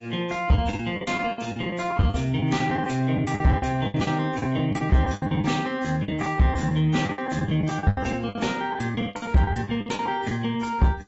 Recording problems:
codec artefacts; AAC, log-spectral distance 3 dB, nothing above 7.8 kHz
distortion; soft clipping, signal-to-distortion ratio 11 dB
packet loss; 19% of the sound replaced, filled with the last packet

